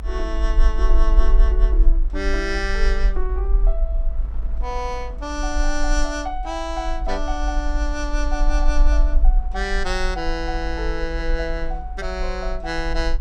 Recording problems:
rumble; below 48 Hz, SNR -3 dB
wind noise; below 420 Hz, SNR 18 dB

